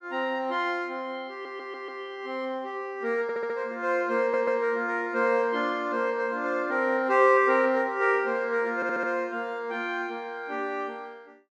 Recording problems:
audio stuttering; 4 times, first at 1.5 s

